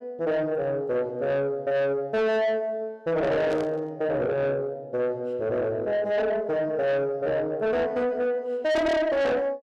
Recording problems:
distortion; soft clipping, signal-to-distortion ratio 7 dB
static burst; at 3.5 s; peak -13 dB vs average level

